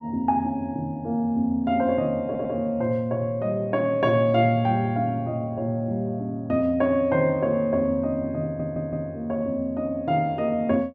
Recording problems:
stutter; at 2.5 s and at 8.5 s

